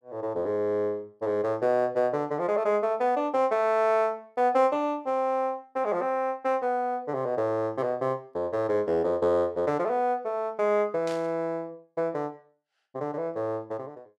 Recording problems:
static burst; at 11 s; peak -10 dB vs average level

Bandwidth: 12.5 kHz